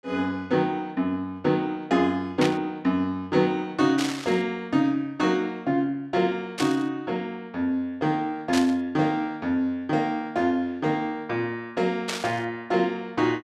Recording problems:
burst of static; 5 times, first at 2.5 s; peak +1 dB vs average level

